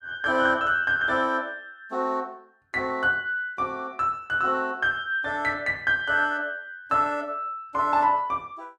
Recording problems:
none

